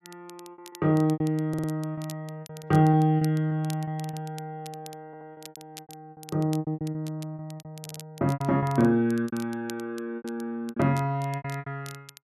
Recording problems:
crackling; vinyl, SNR 21 dB
lost packets; 14% of the sound replaced, filled with repeated pitch periods
stutter; at 1.5 s, at 5 s and at 8 s

